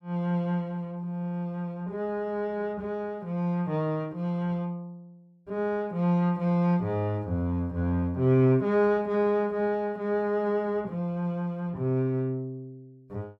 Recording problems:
none

